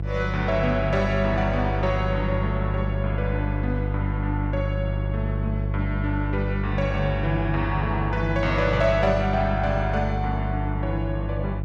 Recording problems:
electrical hum; 50 Hz, harmonics up to 500 Hz, SNR 1 dB

